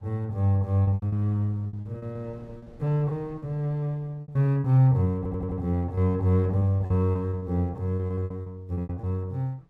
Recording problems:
wind noise; below 300 Hz, SNR 27 dB
packet loss; 14% of the sound replaced, filled with repeated pitch periods
stutter; at 5 s

